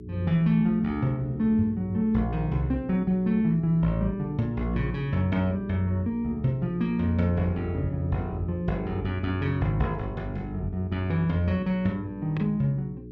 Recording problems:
hum; 60 Hz, harmonics up to 420 Hz, SNR 14 dB

